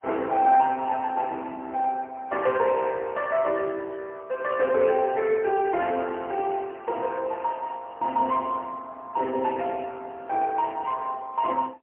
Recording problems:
phone line; 240 Hz to 2.6 kHz, AMR-NB, then MP3

